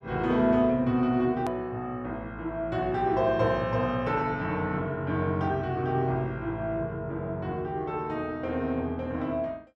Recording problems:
click at an edit; at 1.5 s

